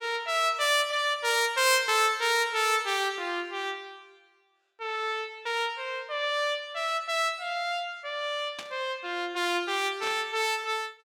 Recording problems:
static burst; at 8.5 s and at 10 s; peak -7 dB vs average level

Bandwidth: 17 kHz